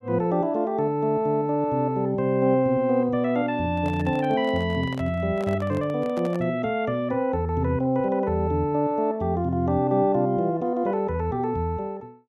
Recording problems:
handling noise; from 3.5 to 6.5 s; peak -9 dB vs average level

